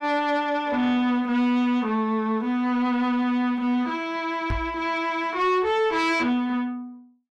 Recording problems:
distorted audio; soft clipping, signal-to-distortion ratio 11 dB
knock on the microphone; at 4.5 s; peak -2 dB vs average level

